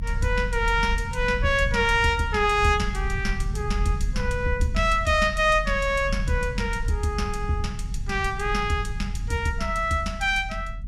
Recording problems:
low-frequency rumble; below 74 Hz, strongest tone 40 Hz, SNR 7 dB

